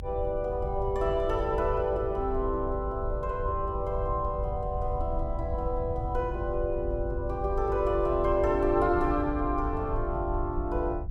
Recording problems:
rumble; below 80 Hz, SNR 6 dB

